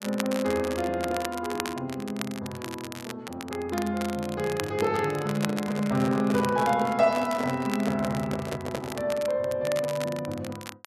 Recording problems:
crackling; vinyl, SNR 12 dB
microphone handling noise; from 5 to 9 s; peak -1 dB vs average level

